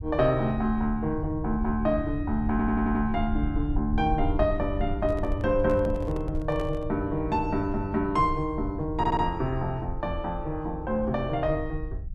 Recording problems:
rumble; below 80 Hz, SNR 8 dB
audio stuttering; at 2.5 s and at 9 s
handling noise; from 5 to 7 s; peak -7 dB vs average level

